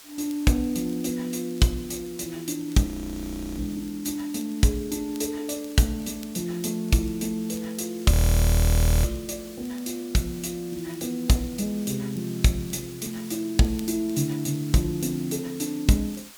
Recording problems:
hiss; slope +1 dB per octave, SNR 18 dB
crackle; vinyl, SNR 29 dB
frozen audio; at 3 s for 0.5 s and at 8 s for 1 s

